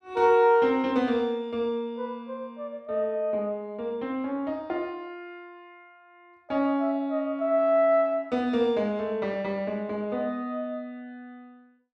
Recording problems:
none

